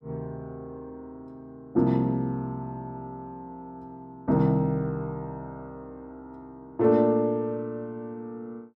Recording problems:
none

